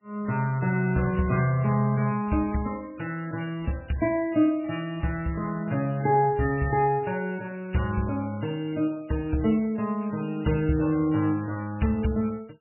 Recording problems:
codec artefacts; MP3, log-spectral distance 4 dB, nothing above 2.7 kHz

